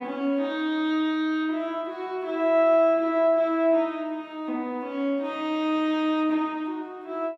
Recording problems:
none

